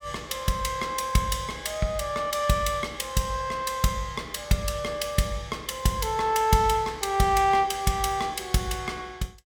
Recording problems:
none

